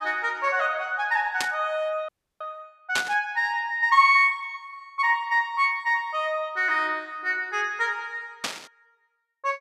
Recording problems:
static burst; at 1.5 s, at 3 s and at 8.5 s; peak +2 dB vs average level
frozen audio; at 2 s

